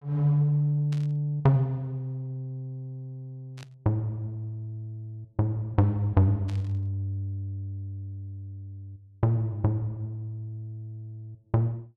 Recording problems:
burst of static; at 1 s, at 3.5 s and at 6.5 s; peak -13 dB vs average level

